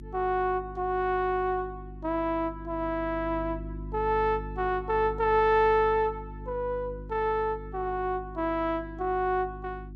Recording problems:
electrical hum; 50 Hz, harmonics up to 350 Hz, SNR 13 dB

